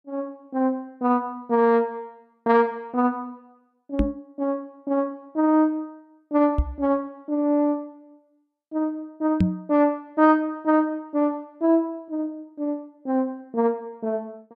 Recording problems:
microphone bump; at 4 s, at 6.5 s and at 9.5 s; peak +7 dB vs average level

